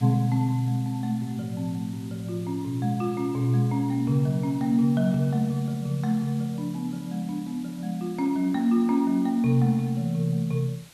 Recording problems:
hiss; slope 0 dB per octave, SNR 24 dB

